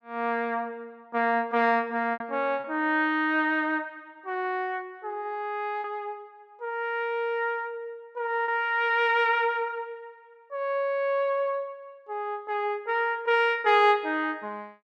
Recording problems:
lost packets; 1.7% of the sound replaced, filled with repeated pitch periods

